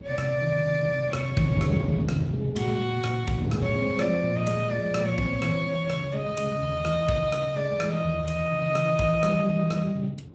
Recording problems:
lossy compression; Speex, log-spectral distance 4 dB, nothing above 7.6 kHz
wind on the microphone; below 270 Hz, SNR 10 dB

